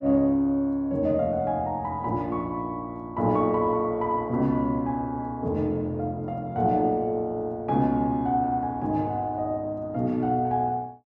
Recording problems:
none

